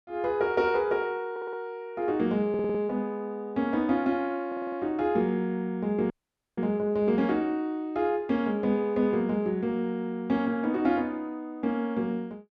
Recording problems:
stutter; at 1.5 s, at 2.5 s and at 4.5 s
dropout; at 6 s

